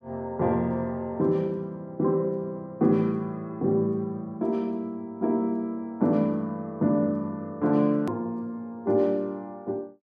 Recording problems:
hard cut with a click; at 8 s

